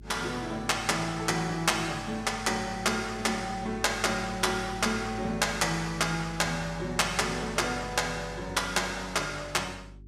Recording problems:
hum; 50 Hz, harmonics up to 400 Hz, SNR 17 dB

